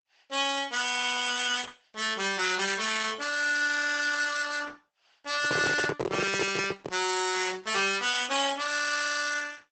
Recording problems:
codec artefacts; Opus, log-spectral distance 8 dB, nothing above 8 kHz
distortion; hard clipping, uneven, signal-to-distortion ratio 7 dB
microphone handling noise; from 5.5 to 7 s; peak +1 dB vs average level

